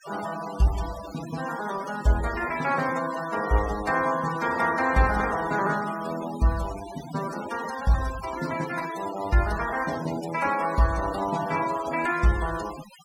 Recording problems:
denoising artefacts; signal-to-artefact ratio 13 dB

